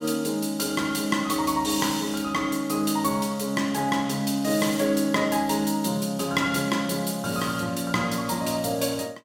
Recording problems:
none

